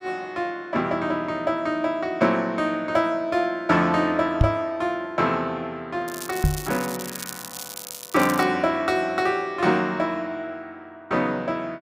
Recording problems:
knock on the microphone; at 4.5 s and at 6.5 s; peak +8 dB vs average level
crackling; from 6 to 8.5 s; loose cable, SNR 11 dB

